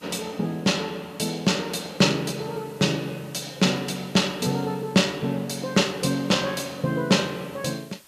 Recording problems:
background hiss; slope 0 dB per octave, SNR 26 dB

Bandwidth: 14.5 kHz